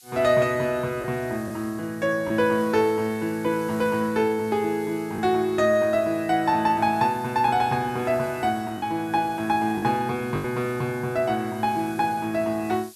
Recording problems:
hiss; SNR 24 dB
packet loss; 1.9% of the sound replaced, filled with the last packet

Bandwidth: 13 kHz